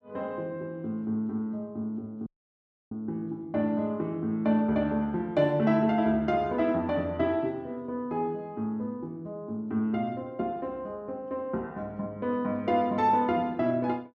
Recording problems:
audio cutting out; at 2.5 s for 0.5 s

